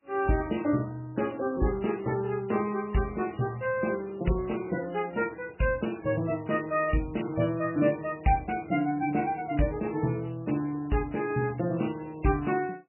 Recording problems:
lossy codec; MP3, log-spectral distance 6 dB, nothing above 2.9 kHz

